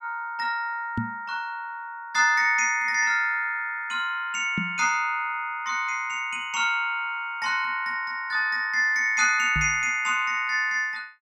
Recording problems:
knock on the microphone; at 1 s, at 4.5 s and at 9.5 s; peak -1 dB vs average level

